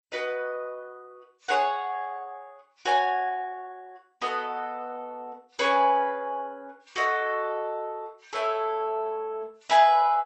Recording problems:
lossy codec; Vorbis, then MP2, log-spectral distance 3 dB, nothing above 8.2 kHz

